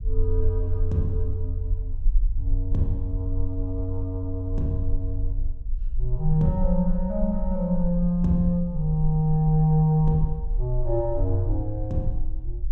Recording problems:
rumble; below 42 Hz, SNR 6 dB

